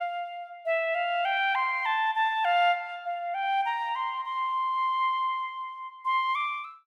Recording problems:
none

